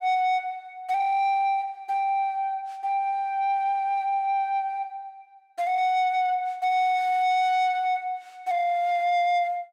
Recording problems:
distortion; soft clipping, signal-to-distortion ratio 12 dB

